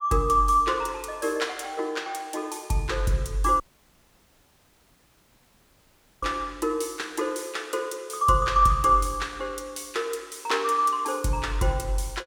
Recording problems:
audio cutting out; at 3.5 s for 2.5 s

